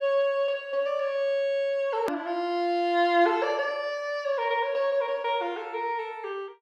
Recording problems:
edit click; at 2 s

